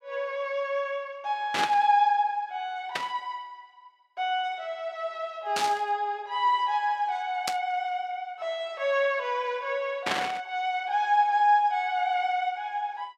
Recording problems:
burst of static; 5 times, first at 1.5 s; peak +3 dB vs average level

